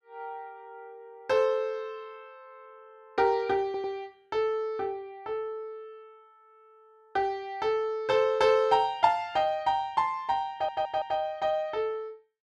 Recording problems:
stutter; at 3.5 s and at 11 s

